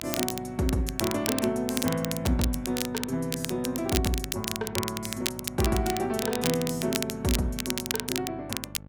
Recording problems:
electrical hum; 50 Hz, harmonics up to 1.1 kHz, SNR 16 dB
crackle; vinyl, SNR 4 dB

